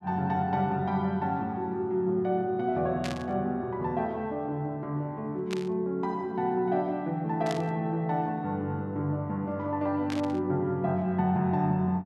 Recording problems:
burst of static; 4 times, first at 3 s; peak -4 dB vs average level

